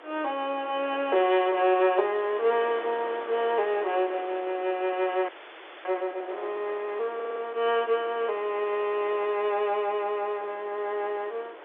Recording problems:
telephone audio; 300 Hz to 3.7 kHz, G.711
wind on the microphone; below 1.5 kHz, SNR 16 dB
frozen audio; at 5.5 s for 0.5 s
audio stuttering; at 7 s

